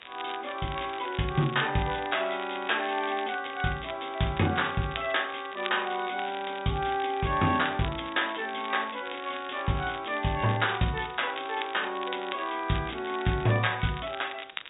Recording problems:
low-pass filter; nothing above 4 kHz
hiss; SNR 24 dB
crackling; vinyl, SNR 13 dB

